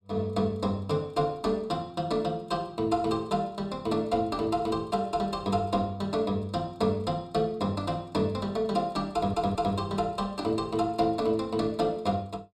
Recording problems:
audio stuttering; at 9 s

